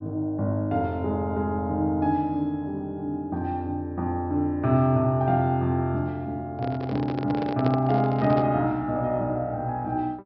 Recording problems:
low-pass filter; nothing above 5.5 kHz
handling noise; from 6.5 to 8.5 s; peak 0 dB vs average level

